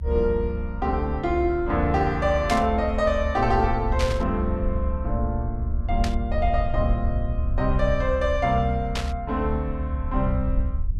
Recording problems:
low-frequency rumble; below 70 Hz, SNR 4 dB
static burst; 4 times, first at 2.5 s; peak 0 dB vs average level

